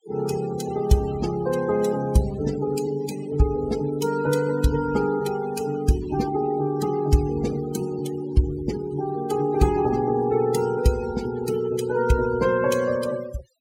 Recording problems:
denoising artefacts; signal-to-artefact ratio 16 dB

